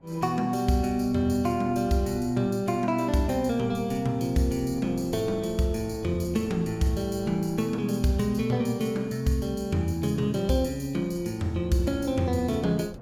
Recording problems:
wind noise; below 350 Hz, SNR 22 dB

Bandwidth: 17.5 kHz